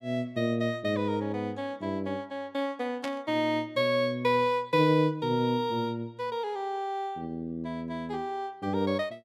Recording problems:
static burst; at 3 s; peak -5 dB vs average level

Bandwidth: 15 kHz